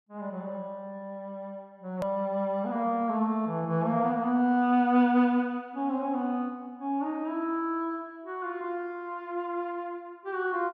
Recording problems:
click at an edit; at 2 s

